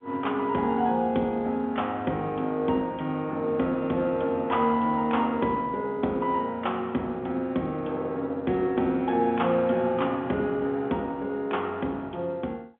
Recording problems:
phone line; 150 Hz to 3.5 kHz, G.711

